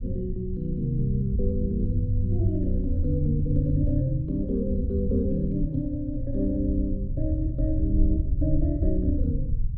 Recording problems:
rumble; below 80 Hz, SNR 3 dB

